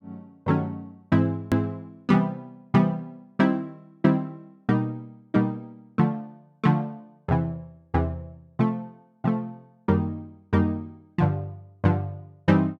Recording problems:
hard cut with a click; at 1.5 s

